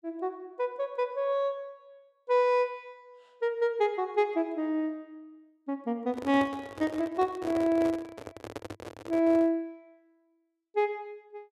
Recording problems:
microphone handling noise; from 6 to 9.5 s; peak -5 dB vs average level

